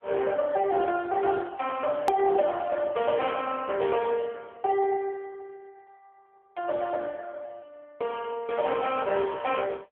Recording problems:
phone line; 300 Hz to 3.3 kHz, AMR-NB
hard cut with a click; at 2 s

